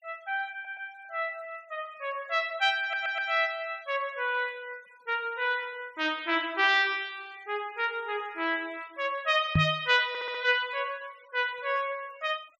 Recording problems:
noise reduction artefacts; signal-to-artefact ratio 26 dB
audio stuttering; at 0.5 s, at 3 s and at 10 s
microphone bump; at 9.5 s; peak +8 dB vs average level

